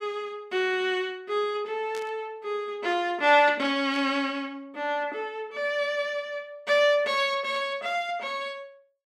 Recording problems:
burst of static; at 2 s, at 4 s and at 7.5 s; peak -12 dB vs average level

